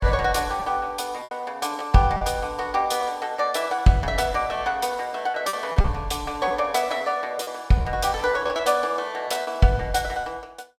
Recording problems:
packet loss; 6% of the sound replaced, filled with repeated pitch periods

